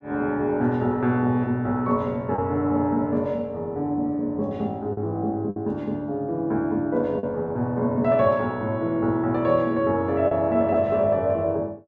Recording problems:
lost packets; 1.7% of the sound replaced, filled with the last packet

